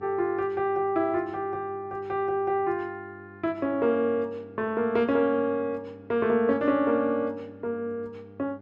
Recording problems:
hum; 50 Hz, harmonics up to 1.2 kHz, SNR 23 dB

